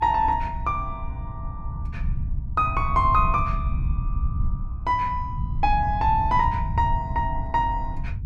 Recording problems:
low-frequency rumble; below 100 Hz, SNR 5 dB

